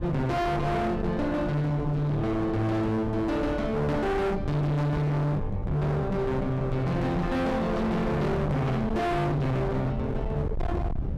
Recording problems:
distortion; hard clipping, signal-to-distortion ratio 6 dB
low-frequency rumble; below 210 Hz, SNR 9 dB

